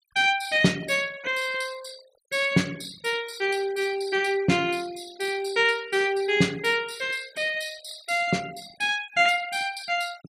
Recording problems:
denoising artefacts; signal-to-artefact ratio 20 dB

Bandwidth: 15 kHz